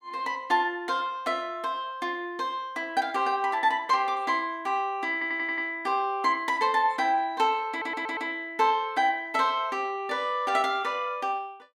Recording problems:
audio stuttering; at 5 s and at 7.5 s

